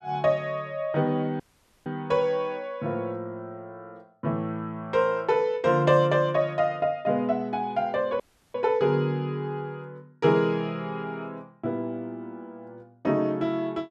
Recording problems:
audio cutting out; at 1.5 s and at 8 s

